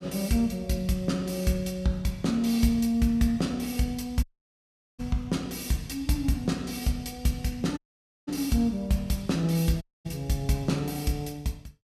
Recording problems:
audio cutting out; at 4 s for 1 s, at 8 s and at 10 s

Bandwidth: 14.5 kHz